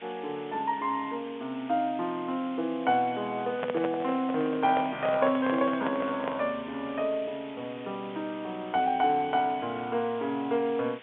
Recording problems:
telephone audio; 220 Hz to 3.8 kHz, G.711
hiss; SNR 19 dB
handling noise; from 3.5 to 6.5 s; peak 0 dB vs average level

